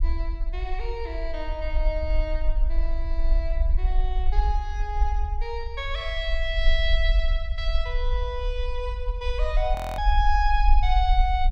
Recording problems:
rumble; below 48 Hz, strongest tone 20 Hz, SNR -3 dB
frozen audio; at 10 s

